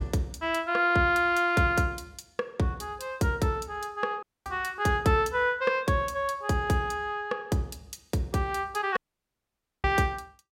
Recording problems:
dropout; at 4 s and at 9 s for 1 s

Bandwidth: 16 kHz